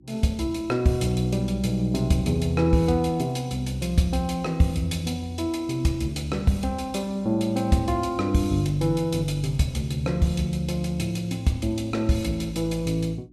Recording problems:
hum; 60 Hz, harmonics up to 360 Hz, SNR 27 dB

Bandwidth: 15 kHz